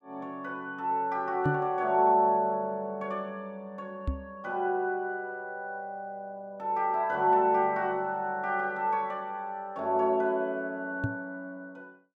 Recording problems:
microphone bump; at 1.5 s, at 4 s and at 11 s; peak +4 dB vs average level

